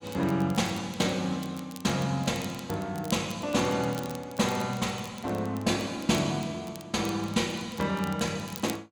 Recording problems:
crackle; vinyl, SNR 18 dB

